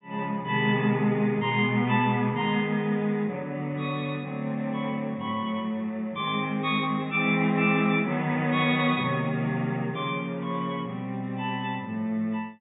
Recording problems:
low-pass filter; nothing above 4 kHz

